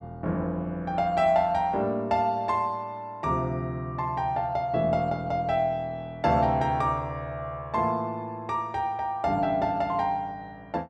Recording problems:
none

